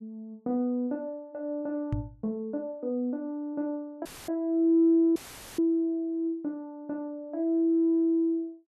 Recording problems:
microphone thump; at 2 s; peak +2 dB vs average level
audio cutting out; at 4 s and at 5 s; filled with static

